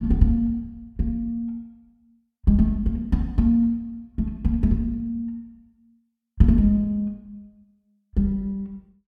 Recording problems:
none

